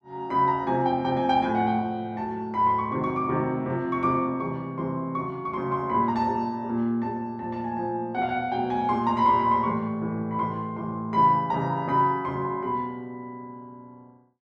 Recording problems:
none

